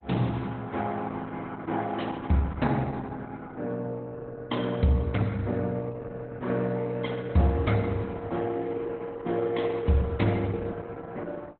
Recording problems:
codec artefacts; Opus, log-spectral distance 3 dB, nothing above 3.8 kHz

